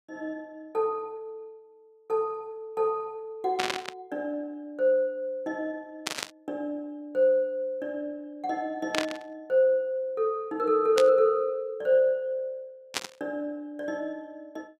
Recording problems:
static burst; 5 times, first at 3.5 s; peak +4 dB vs average level

